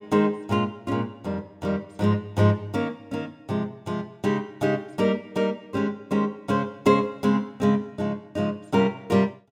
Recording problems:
none

